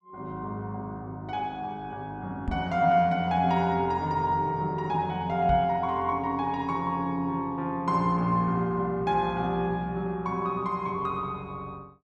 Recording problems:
microphone thump; at 2.5 s and at 5.5 s; peak 0 dB vs average level

